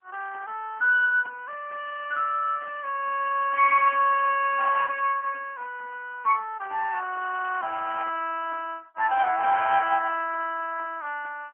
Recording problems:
phone line; 300 Hz to 3.1 kHz, AMR-NB

